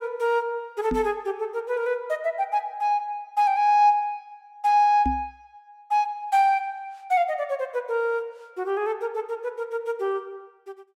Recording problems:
microphone bump; at 1 s and at 5 s; peak 0 dB vs average level

